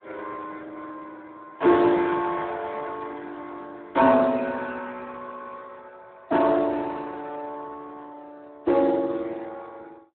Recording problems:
telephone audio; 260 Hz to 3.7 kHz, Speex

